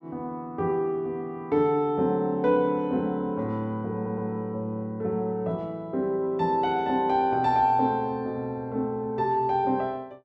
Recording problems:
stutter; at 4 s

